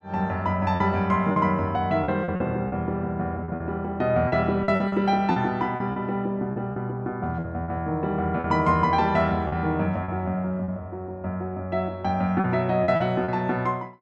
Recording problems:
lost packets; 8% of the sound replaced, filled with repeated pitch periods

